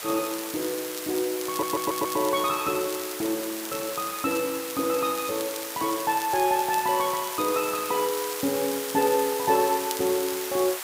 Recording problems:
background hiss; SNR 6 dB
crackling; vinyl, SNR 14 dB
stutter; at 1.5 s

